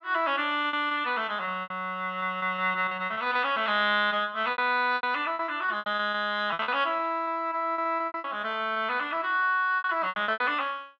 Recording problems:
packet loss; 15% of the sound replaced, filled with repeated pitch periods

